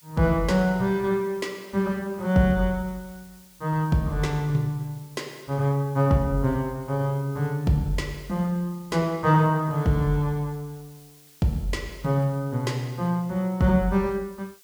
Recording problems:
background hiss; slope +3 dB per octave, SNR 26 dB

